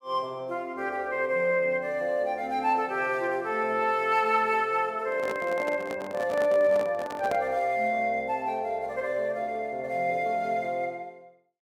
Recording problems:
handling noise; from 5 to 7.5 s; peak -3 dB vs average level

